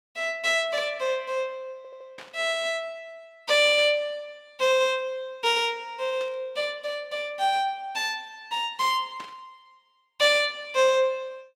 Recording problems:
stutter; at 2 s
burst of static; 4 times, first at 2 s; peak -13 dB vs average level

